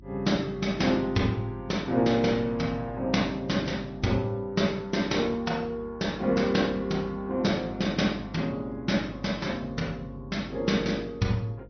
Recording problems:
treble missing; nothing above 6 kHz
codec artefacts; MP3, log-spectral distance 2 dB
electrical hum; 50 Hz, harmonics up to 350 Hz, SNR 19 dB

